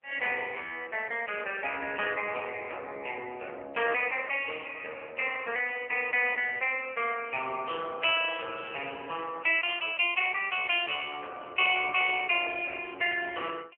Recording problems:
phone line; 340 Hz to 3.3 kHz, AMR-NB

